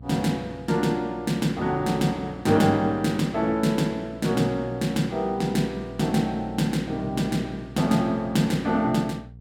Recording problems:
electrical hum; 60 Hz, harmonics up to 480 Hz, SNR 18 dB

